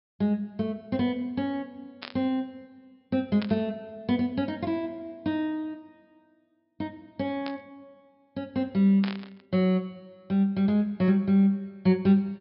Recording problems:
treble missing; nothing above 5.3 kHz
static burst; 4 times, first at 2 s; peak -5 dB vs average level

